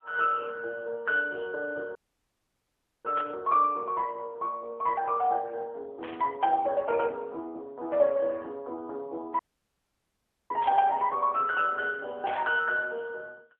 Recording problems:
telephone audio; 340 Hz to 3 kHz, AMR-NB
dropout; at 2 s for 1 s and at 9.5 s for 1 s
burst of static; 4 times, first at 3 s; peak -8 dB vs average level

